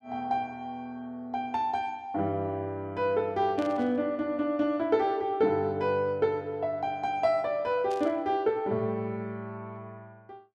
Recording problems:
static burst; at 3.5 s and at 8 s; peak -12 dB vs average level

